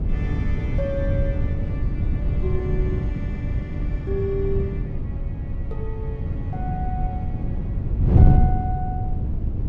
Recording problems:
wind noise; below 140 Hz, SNR -8 dB

